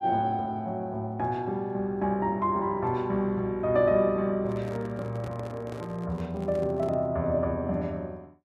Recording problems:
handling noise; from 4.5 to 7 s; peak -9 dB vs average level

